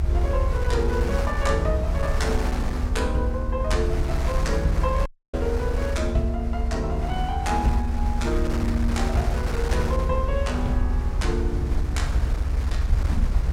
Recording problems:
rumble; below 78 Hz, SNR -2 dB
wind noise; below 1.9 kHz, SNR 9 dB
audio cutting out; at 5 s

